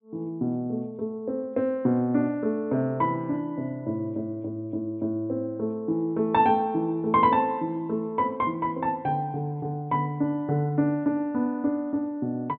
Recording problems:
treble missing; nothing above 4 kHz

